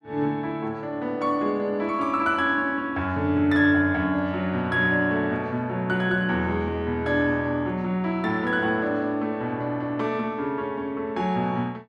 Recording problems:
none

